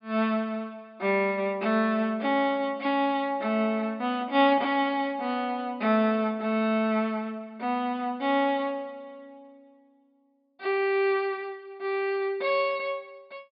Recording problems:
treble missing; nothing above 5 kHz

